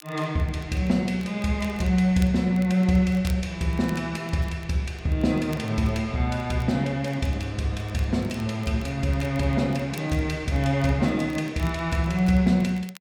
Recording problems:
crackle; vinyl, SNR 25 dB

